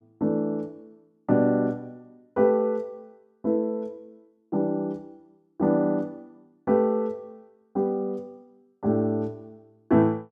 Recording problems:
none

